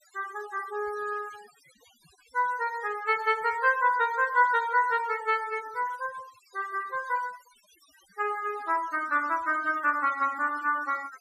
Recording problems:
noise reduction artefacts; signal-to-artefact ratio 20 dB

